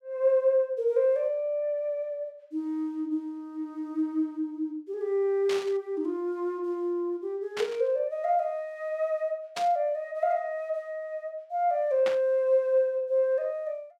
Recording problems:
static burst; 4 times, first at 5.5 s; peak -2 dB vs average level

